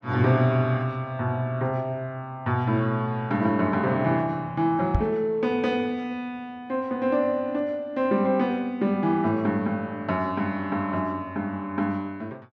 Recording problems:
knock on the microphone; at 5 s; peak +6 dB vs average level

